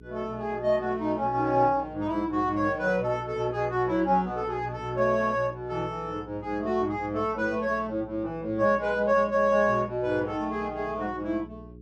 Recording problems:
hum; 60 Hz, harmonics up to 420 Hz, SNR 20 dB

